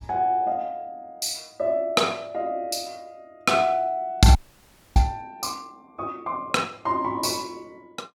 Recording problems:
audio freezing; at 4.5 s for 0.5 s

